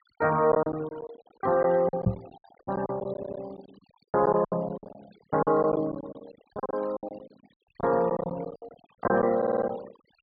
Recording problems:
low-pass filter; nothing above 4.8 kHz
denoising artefacts; signal-to-artefact ratio 22 dB
lost packets; 16% of the sound replaced, filled with silence
knock on the microphone; at 2 s; peak +6 dB vs average level
stutter; at 3 s and at 9.5 s

